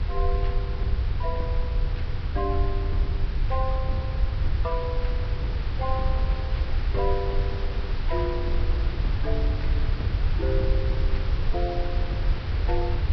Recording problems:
codec artefacts; Vorbis, log-spectral distance 3 dB
background hiss; SNR 5 dB
low-frequency rumble; below 74 Hz, SNR -6 dB

